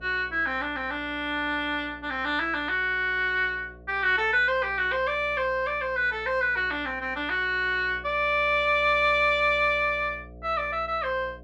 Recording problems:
hum; 60 Hz, harmonics up to 720 Hz, SNR 22 dB

